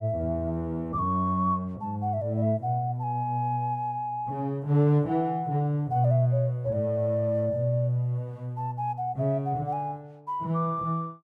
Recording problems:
none

